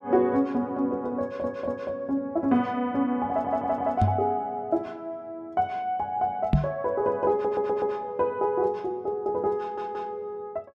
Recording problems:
stutter; 4 times, first at 1 s
microphone bump; at 4 s and at 6.5 s; peak +9 dB vs average level

